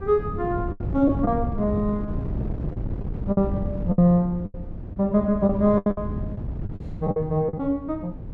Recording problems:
wind on the microphone; below 190 Hz, SNR 8 dB
lost packets; 9% of the sound replaced, filled with the last packet

